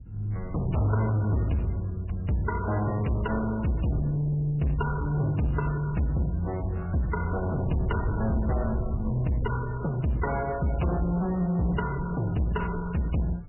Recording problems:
lossy codec; AAC, then MP3, log-spectral distance 3 dB, nothing above 2.9 kHz
distorted audio; soft clipping, signal-to-distortion ratio 11 dB
low-frequency rumble; below 120 Hz, SNR 13 dB

